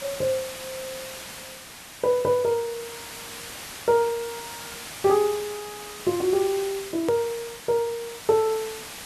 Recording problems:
background hiss; slope 0 dB per octave, SNR 12 dB
click at an edit; at 7 s

